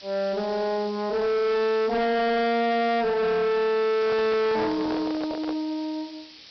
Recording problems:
treble cut off; nothing above 5.5 kHz
distortion; soft clipping, signal-to-distortion ratio 7 dB
background hiss; SNR 19 dB
handling noise; from 4 to 5.5 s; peak -4 dB vs average level

